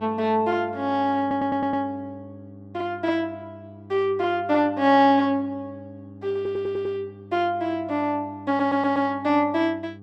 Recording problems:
hum; 50 Hz, harmonics up to 800 Hz, SNR 20 dB
audio stuttering; at 1 s, at 6.5 s and at 8.5 s

